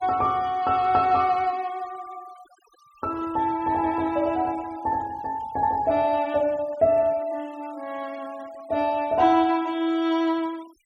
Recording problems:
denoising artefacts; signal-to-artefact ratio 25 dB

